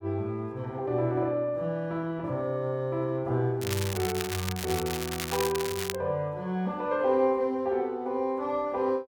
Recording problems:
crackling; from 3.5 to 6 s; loose cable, SNR 5 dB

